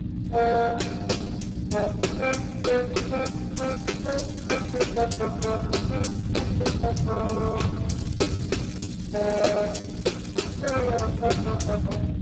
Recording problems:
lossy codec; Opus, then Speex, log-spectral distance 4 dB, nothing above 7.6 kHz
electrical hum; 60 Hz, harmonics up to 300 Hz, SNR 5 dB
rumble; below 180 Hz, SNR 4 dB
lost packets; 11% of the sound replaced, filled with the last packet
crackle; from 3.5 to 5 s and from 8 to 11 s; loose cable, SNR 17 dB

